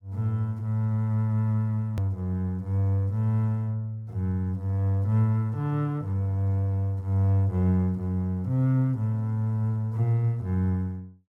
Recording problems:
click at an edit; at 2 s

